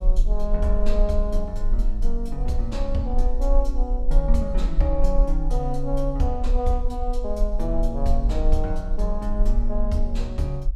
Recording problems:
rumble; below 40 Hz, strongest tone 20 Hz, SNR -2 dB

